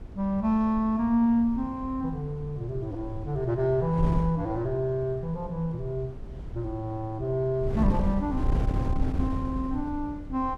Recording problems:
wind on the microphone; below 120 Hz, SNR 7 dB

